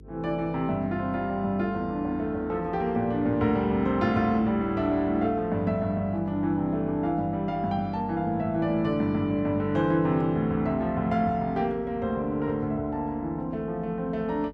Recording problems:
hum; 50 Hz, harmonics up to 450 Hz, SNR 22 dB

